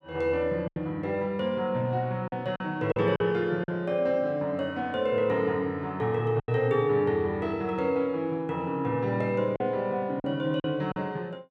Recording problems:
lost packets; 5% of the sound replaced, filled with silence

